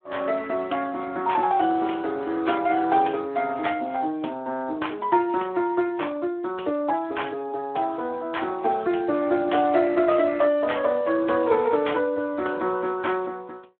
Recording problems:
phone line; 240 Hz to 3.5 kHz, Speex

